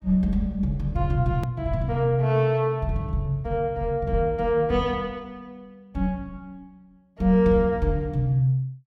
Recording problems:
hard cut with a click; at 1.5 s

